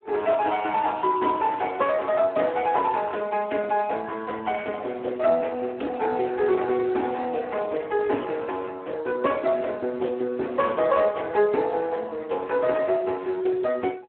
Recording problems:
phone line; 260 Hz to 2.8 kHz, Speex

